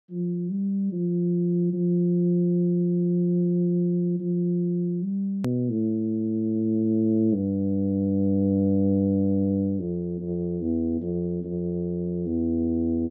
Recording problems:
edit click; at 5.5 s

